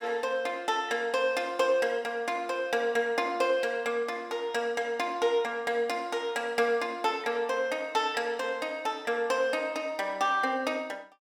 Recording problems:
none

